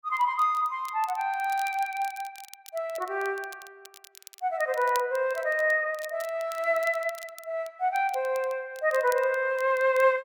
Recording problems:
crackling; vinyl, SNR 21 dB

